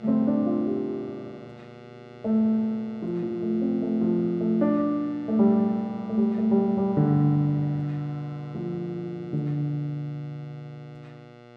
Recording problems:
mains hum; 60 Hz, harmonics up to 4.2 kHz, SNR 20 dB

